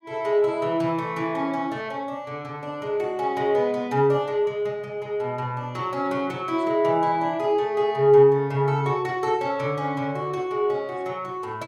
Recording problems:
none

